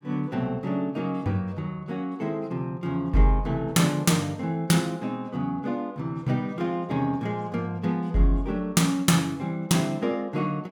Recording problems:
none

